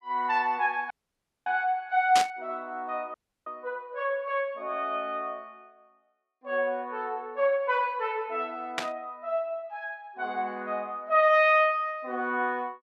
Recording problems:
dropout; at 1 s for 0.5 s and at 3 s
burst of static; at 2 s and at 9 s; peak +4 dB vs average level

